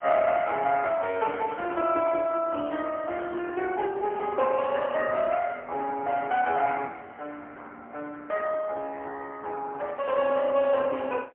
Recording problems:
telephone audio; 260 Hz to 3.3 kHz, AMR-NB, then MP3

